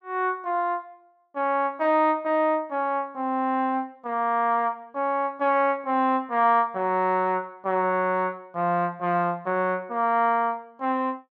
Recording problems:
none

